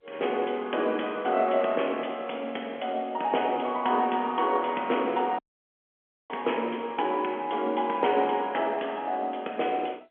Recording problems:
telephone audio; 260 Hz to 3.4 kHz, G.711
audio cutting out; at 5.5 s for 1 s

